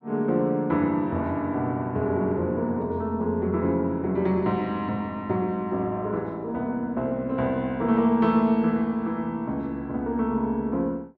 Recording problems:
none

